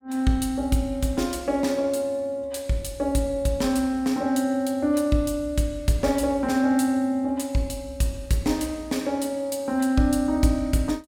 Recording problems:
none

